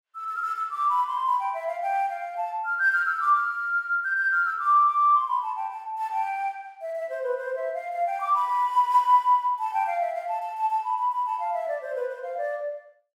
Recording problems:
none

